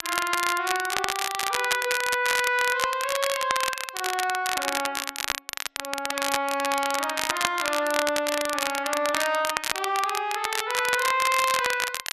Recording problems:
crackling; vinyl, SNR 3 dB

